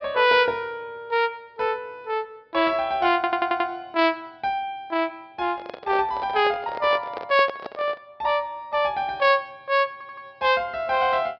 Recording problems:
treble cut off; nothing above 5.5 kHz
audio stuttering; at 3 s and at 10 s
handling noise; from 5.5 to 8 s; peak -5 dB vs average level

